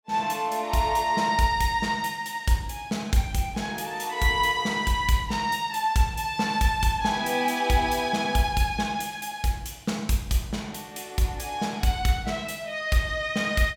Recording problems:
none

